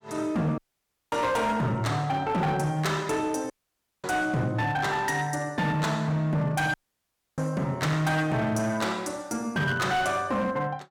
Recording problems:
distorted audio; hard clipping, signal-to-distortion ratio 11 dB
dropout; at 0.5 s for 0.5 s, at 3.5 s for 0.5 s and at 6.5 s for 0.5 s

